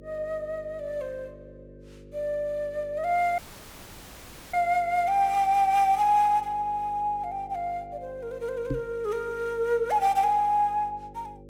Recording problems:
mains hum; 50 Hz, harmonics up to 550 Hz, SNR 22 dB
dropout; at 3.5 s for 1 s
knock on the microphone; at 8.5 s; peak -1 dB vs average level

